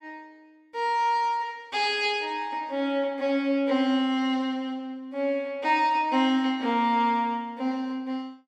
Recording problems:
none

